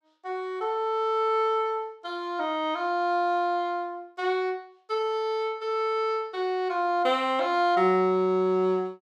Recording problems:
none

